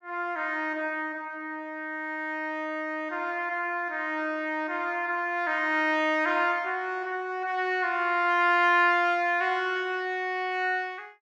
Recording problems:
none

